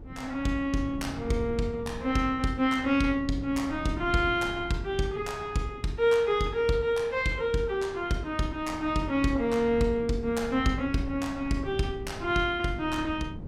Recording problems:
wind on the microphone; below 190 Hz, SNR 15 dB

